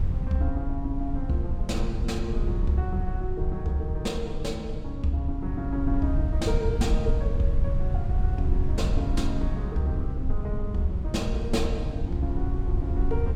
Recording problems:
wind on the microphone; below 80 Hz, SNR 0 dB

